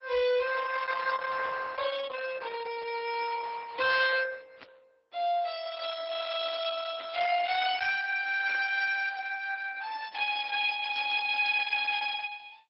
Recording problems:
lossy codec; MP3, then Opus, log-spectral distance 5 dB, nothing above 5.3 kHz
distortion; hard clipping, signal-to-distortion ratio 11 dB
burst of static; 5 times, first at 2.5 s; peak -13 dB vs average level

